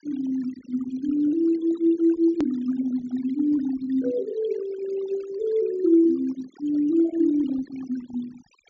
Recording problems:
treble missing; nothing above 7.4 kHz
denoising artefacts; signal-to-artefact ratio 19 dB
edit click; at 2.5 s

